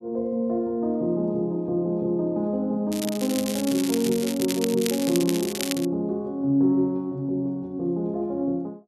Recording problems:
crackling; from 3 to 6 s; loose cable, SNR 7 dB

